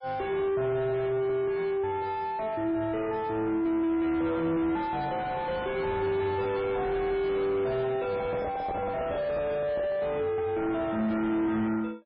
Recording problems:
codec artefacts; MP3, log-spectral distance 2 dB, nothing above 4.5 kHz
distorted audio; soft clipping, signal-to-distortion ratio 4 dB
handling noise; from 8 to 10 s; peak +1 dB vs average level

